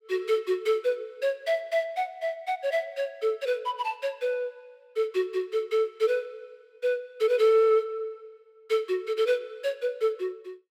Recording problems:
none

